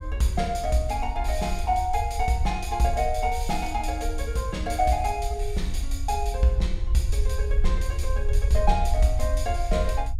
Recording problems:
rumble; below 64 Hz, SNR 2 dB

